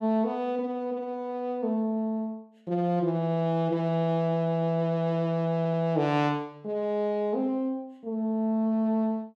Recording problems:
audio stuttering; at 5.5 s

